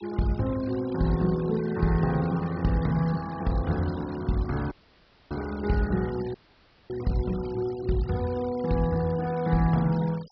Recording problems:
low-pass filter; nothing above 5.5 kHz
denoising artefacts; signal-to-artefact ratio 20 dB
audio cutting out; at 4.5 s for 0.5 s and at 6.5 s for 0.5 s

